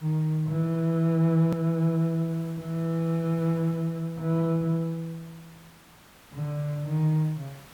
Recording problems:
hiss; slope -3 dB per octave, SNR 25 dB
hard cut with a click; at 1.5 s

